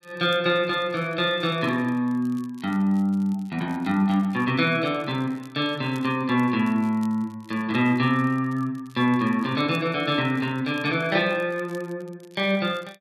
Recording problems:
crackling; vinyl, SNR 30 dB

